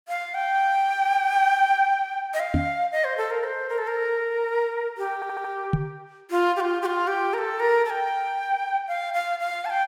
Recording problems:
knock on the microphone; at 2.5 s and at 5.5 s; peak +5 dB vs average level
audio stuttering; at 5 s

